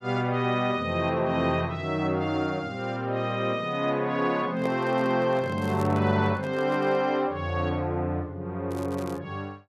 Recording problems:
handling noise; from 4.5 to 7 s; peak -3 dB vs average level
crackle; at 5.5 s and at 8.5 s; loose cable, SNR 24 dB

